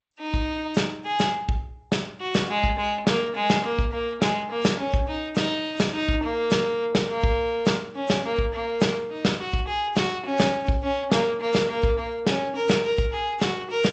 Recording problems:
codec artefacts; G.722, then AAC, log-spectral distance 2 dB, nothing above 7.8 kHz

